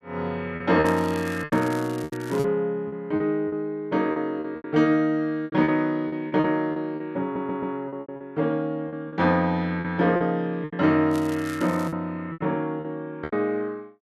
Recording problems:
packet loss; 11% of the sound replaced, filled with repeated pitch periods
crackling; from 1 to 2.5 s and at 11 s; loose cable, SNR 19 dB
audio stuttering; at 7 s

